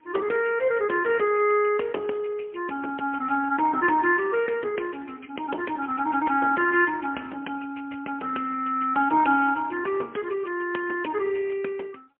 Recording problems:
telephone audio; 260 Hz to 3.1 kHz, AMR-NB, then MP3

